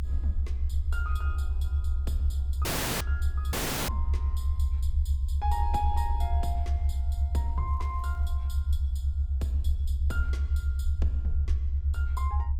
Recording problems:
low-frequency rumble; below 74 Hz, strongest tone 66 Hz, SNR -10 dB
audio cutting out; at 2.5 s and at 3.5 s
crackling; at 7.5 s; loose cable, SNR 28 dB

